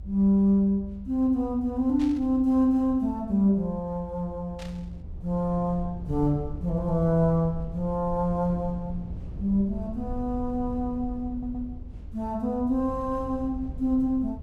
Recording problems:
rumble; below 86 Hz, SNR 14 dB
static burst; at 2 s and at 4.5 s; peak -13 dB vs average level
stutter; at 11 s

